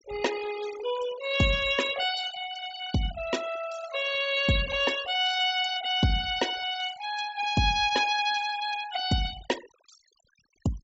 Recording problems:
treble missing; nothing above 8 kHz
denoising artefacts; signal-to-artefact ratio 14 dB

